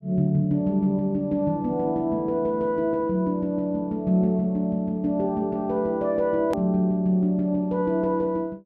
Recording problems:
hard cut with a click; at 6.5 s

